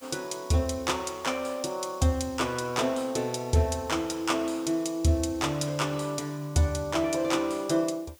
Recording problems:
background hiss; slope +1 dB per octave, SNR 26 dB

